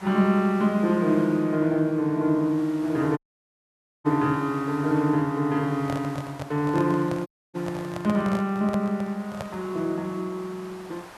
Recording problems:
hiss; SNR 19 dB
audio cutting out; at 3 s for 1 s and at 7.5 s
handling noise; from 6 to 9.5 s; peak -5 dB vs average level

